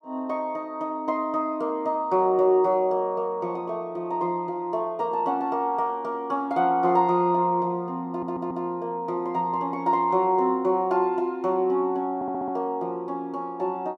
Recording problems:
stutter; at 8 s and at 12 s

